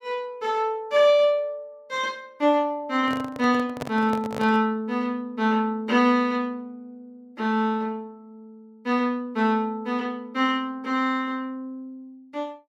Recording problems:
microphone handling noise; from 3 to 4.5 s; peak -4 dB vs average level

